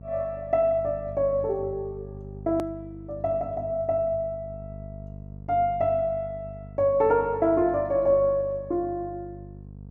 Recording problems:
hum; 50 Hz, harmonics up to 500 Hz, SNR 16 dB
click at an edit; at 2.5 s

